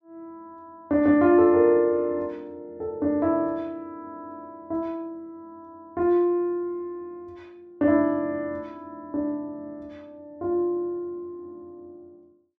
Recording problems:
none

